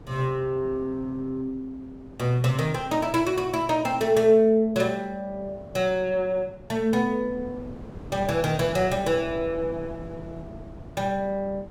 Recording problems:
wind noise; below 350 Hz, SNR 18 dB

